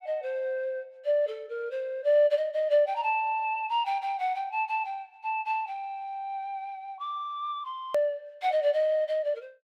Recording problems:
edit click; at 8 s

